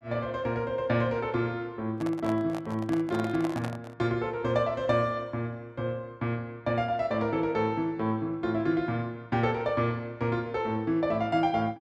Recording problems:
handling noise; from 2 to 4 s; peak -4 dB vs average level

